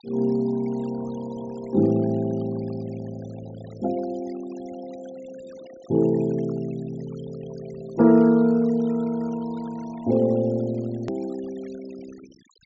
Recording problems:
low-pass filter; nothing above 8 kHz
noise reduction artefacts; signal-to-artefact ratio 24 dB
click at an edit; at 11 s

